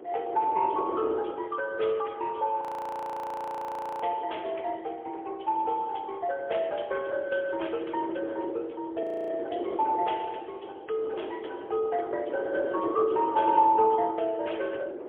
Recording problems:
telephone audio; 280 Hz to 3.3 kHz, AMR-NB, then MP3
wind noise; below 540 Hz, SNR 9 dB
frozen audio; at 2.5 s for 1.5 s and at 9 s

